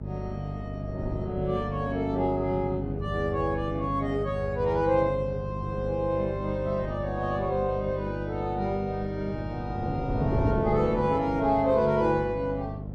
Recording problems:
hum; 50 Hz, harmonics up to 650 Hz, SNR 7 dB
wind noise; below 340 Hz, SNR 10 dB

